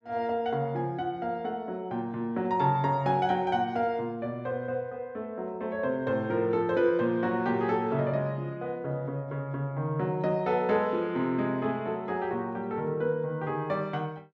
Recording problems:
none

